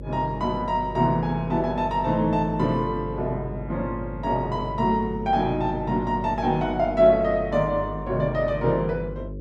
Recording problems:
hum; 50 Hz, harmonics up to 550 Hz, SNR 12 dB

